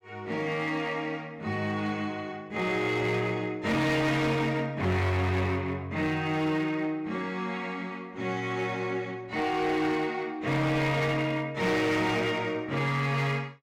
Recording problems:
distorted audio; hard clipping, signal-to-distortion ratio 11 dB

